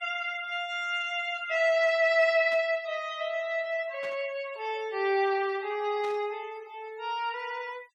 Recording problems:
noise reduction artefacts; signal-to-artefact ratio 23 dB
static burst; at 2.5 s, at 4 s and at 6 s; peak -13 dB vs average level

